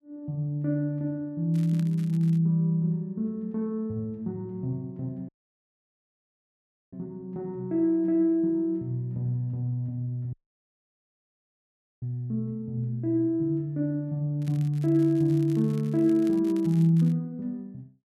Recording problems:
crackle; at 1.5 s and from 14 to 17 s; loose cable, SNR 26 dB
audio cutting out; at 5.5 s for 1.5 s and at 10 s for 1.5 s

